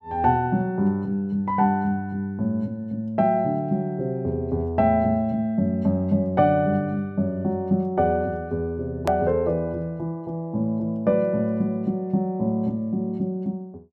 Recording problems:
click at an edit; at 9 s

